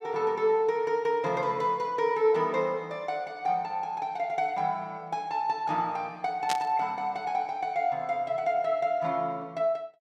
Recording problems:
burst of static; at 6.5 s; peak +1 dB vs average level

